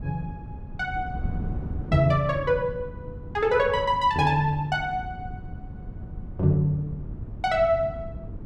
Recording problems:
wind on the microphone; below 160 Hz, SNR 12 dB

